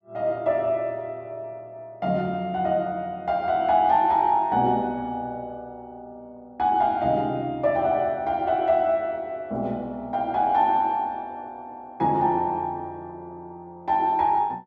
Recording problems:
none

